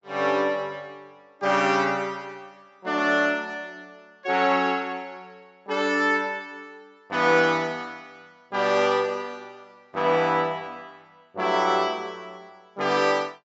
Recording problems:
treble cut off; nothing above 8 kHz

